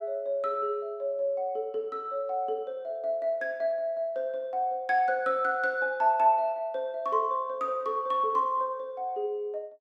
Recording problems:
none

